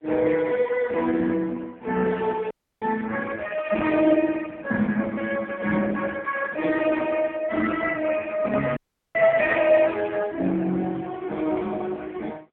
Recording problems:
telephone audio; 150 Hz to 3.4 kHz, AMR-NB
dropout; at 2.5 s and at 9 s

